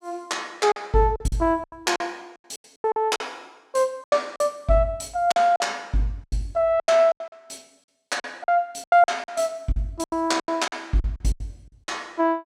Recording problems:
lost packets; 15% of the sound replaced, filled with silence

